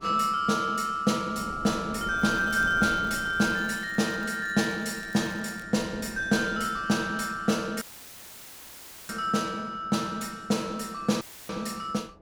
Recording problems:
wind noise; below 500 Hz, SNR 19 dB
crackle; from 2 to 5.5 s; loose cable, SNR 25 dB
dropout; at 8 s for 1.5 s and at 11 s; filled with static

